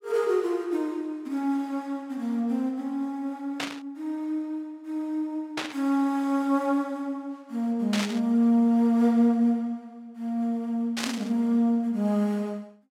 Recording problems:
static burst; 4 times, first at 3.5 s; peak +1 dB vs average level

